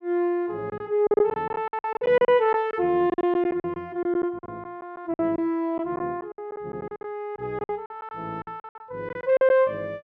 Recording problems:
packet loss; 15% of the sound replaced, filled with silence

